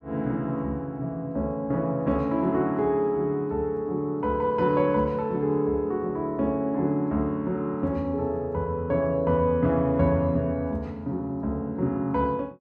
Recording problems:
none

